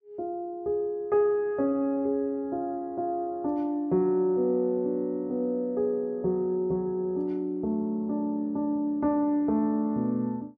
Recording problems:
none

